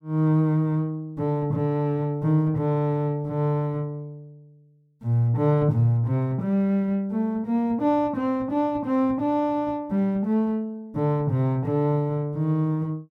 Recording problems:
none

